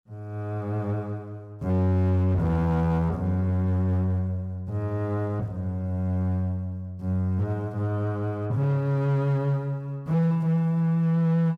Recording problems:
distortion; hard clipping, signal-to-distortion ratio 11 dB

